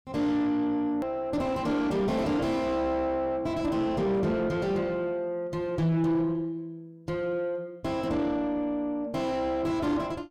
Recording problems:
distorted audio; soft clipping, signal-to-distortion ratio 6 dB
click at an edit; at 1 s

